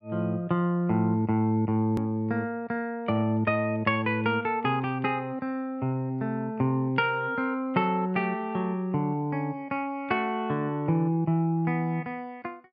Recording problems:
hard cut with a click; at 2 s

